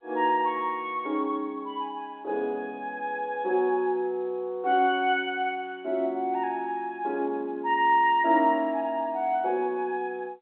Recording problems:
telephone audio; 240 Hz to 3.7 kHz, G.711

